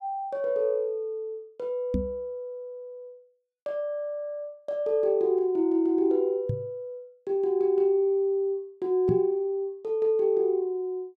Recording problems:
microphone thump; at 2 s, at 6.5 s and at 9 s; peak +2 dB vs average level

